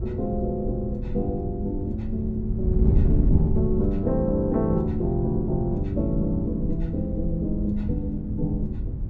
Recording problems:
wind noise; below 110 Hz, SNR 2 dB

